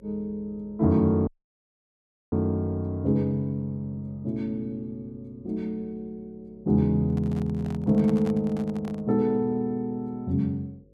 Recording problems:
hum; 50 Hz, harmonics up to 550 Hz, SNR 29 dB
dropout; at 1.5 s for 1 s
handling noise; from 7 to 9 s; peak -10 dB vs average level

